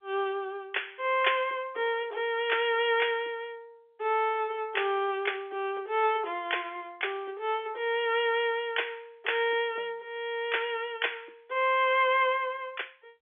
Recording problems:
telephone audio; 320 Hz to 3.5 kHz, G.711

